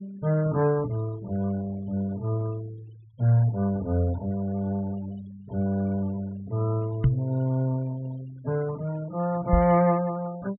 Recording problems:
treble cut off; nothing above 4 kHz
noise reduction artefacts; signal-to-artefact ratio 22 dB
microphone thump; at 7 s and at 9.5 s; peak +9 dB vs average level

